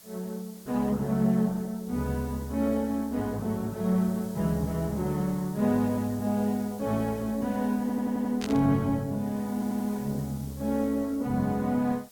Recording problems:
lossy compression; Opus, log-spectral distance 2 dB
hiss; SNR 21 dB
stutter; at 8 s and at 9.5 s
static burst; at 8.5 s; peak -4 dB vs average level

